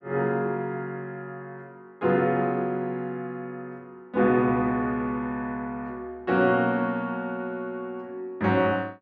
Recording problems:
none

